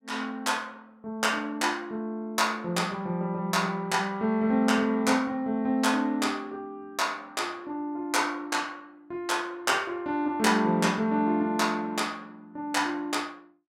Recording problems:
none

